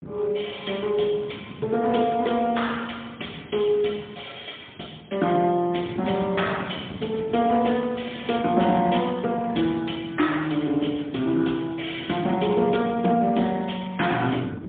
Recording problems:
telephone audio; 170 Hz to 3.6 kHz, AMR-NB, then MP3
wind noise; below 340 Hz, SNR 17 dB

